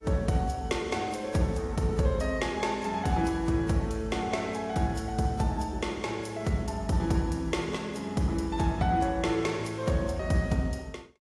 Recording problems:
lossy codec; AAC, log-spectral distance 2 dB, nothing above 11 kHz

